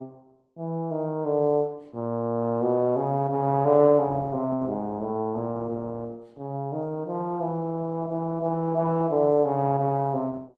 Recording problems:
lossy codec; Opus, log-spectral distance 2 dB

